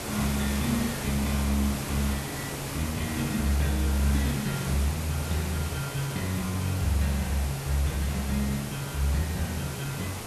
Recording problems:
hiss; slope -4 dB per octave, SNR 5 dB

